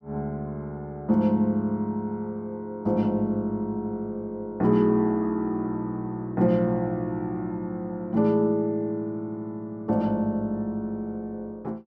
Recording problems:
none

